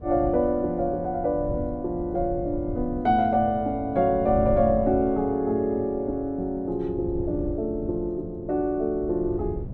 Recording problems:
wind noise; below 140 Hz, SNR 12 dB

